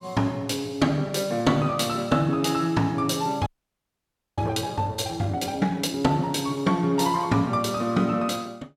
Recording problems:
frozen audio; at 3.5 s for 1 s

